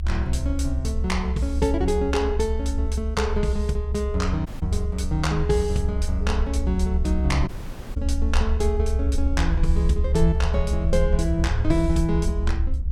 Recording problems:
low-frequency rumble; below 70 Hz, SNR 0 dB
audio cutting out; at 4.5 s and at 7.5 s

